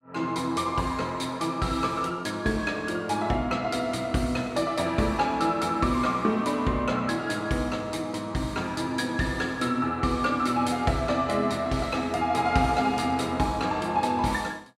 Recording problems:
none

